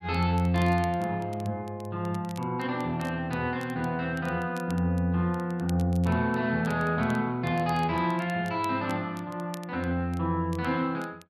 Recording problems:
crackling; vinyl, SNR 24 dB

